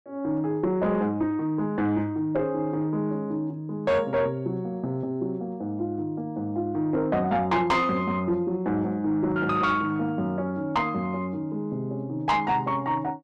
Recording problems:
distorted audio; soft clipping, signal-to-distortion ratio 10 dB

